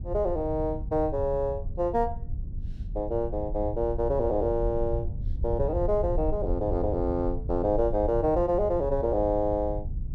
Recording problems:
low-frequency rumble; below 84 Hz, SNR 7 dB

